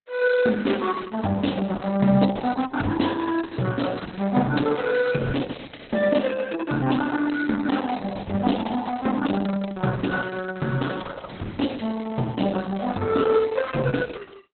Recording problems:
lossy codec; Opus, log-spectral distance 5 dB, nothing above 4.1 kHz

